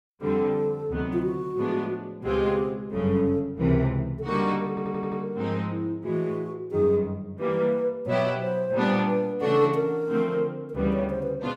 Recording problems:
stutter; at 4.5 s

